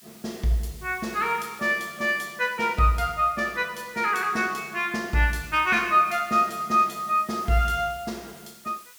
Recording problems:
hiss; slope +3 dB per octave, SNR 23 dB

